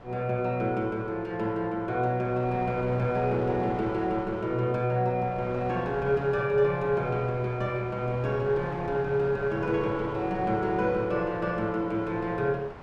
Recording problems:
wind on the microphone; below 1.1 kHz, SNR 14 dB

